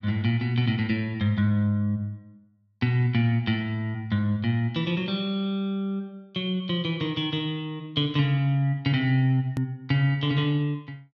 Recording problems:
hard cut with a click; at 9.5 s

